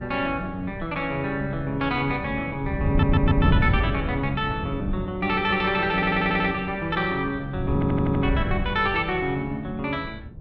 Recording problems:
wind noise; below 180 Hz, SNR 4 dB
stutter; at 3 s, at 6 s and at 7.5 s

